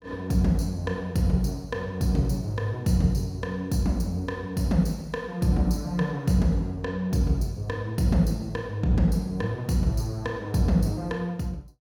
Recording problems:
none

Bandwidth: 18 kHz